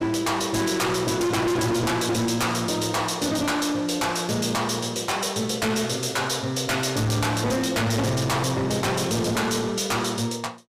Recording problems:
distorted audio; hard clipping, uneven, signal-to-distortion ratio 6 dB

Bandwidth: 15 kHz